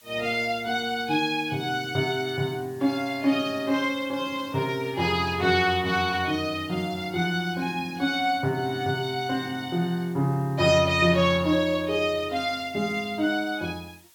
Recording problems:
hiss; slope +1 dB per octave, SNR 27 dB

